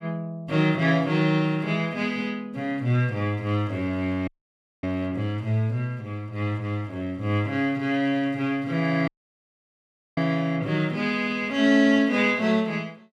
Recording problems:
audio cutting out; at 4.5 s for 0.5 s and at 9 s for 1 s

